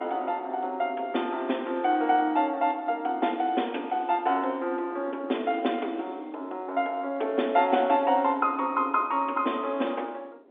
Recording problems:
phone line; 240 Hz to 3.7 kHz, G.711
wind noise; below 470 Hz, SNR 18 dB

